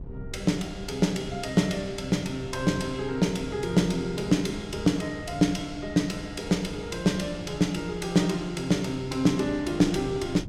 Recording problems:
wind noise; below 150 Hz, SNR 16 dB

